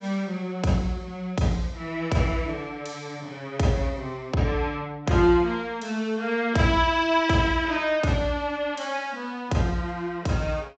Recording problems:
low-pass filter; nothing above 8 kHz

